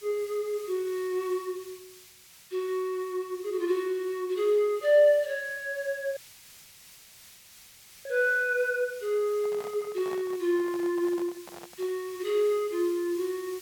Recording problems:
hiss; slope +3 dB per octave, SNR 21 dB
audio cutting out; at 6 s for 2 s
microphone handling noise; from 9.5 to 12 s; peak -11 dB vs average level

